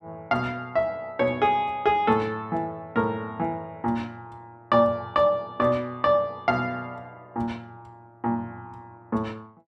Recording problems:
none

